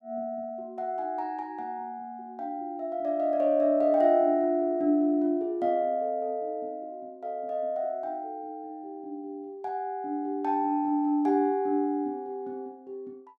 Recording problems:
none

